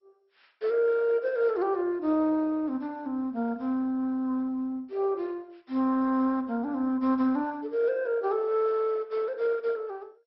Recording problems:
codec artefacts; MP2, log-spectral distance 2 dB, nothing above 5.5 kHz

